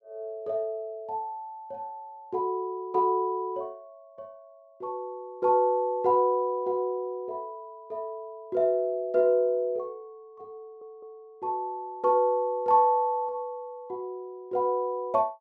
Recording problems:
stutter; at 11 s

